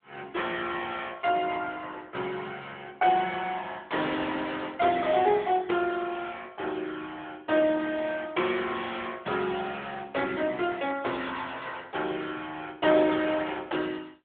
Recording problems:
phone line; 260 Hz to 3.5 kHz, AMR-NB

